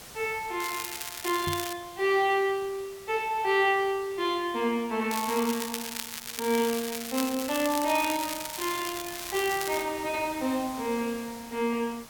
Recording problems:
hiss; slope -2 dB per octave, SNR 17 dB
crackle; from 0.5 to 1.5 s and from 5 to 10 s; loose cable, SNR 6 dB
knock on the microphone; at 1.5 s; peak -3 dB vs average level

